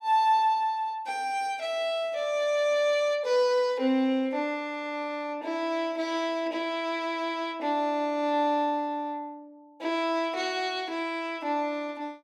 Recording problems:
none

